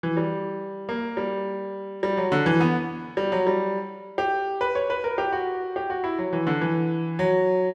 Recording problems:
none

